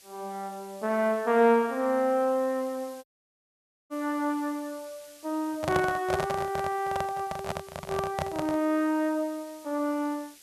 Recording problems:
background hiss; SNR 22 dB
dropout; at 3 s for 1 s
handling noise; from 5.5 to 8.5 s; peak +2 dB vs average level

